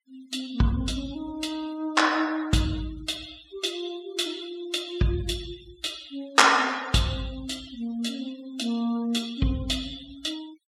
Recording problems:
noise reduction artefacts; signal-to-artefact ratio 19 dB

